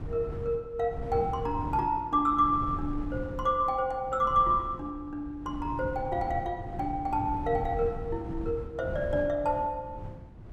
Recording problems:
wind on the microphone; below 170 Hz, SNR 10 dB

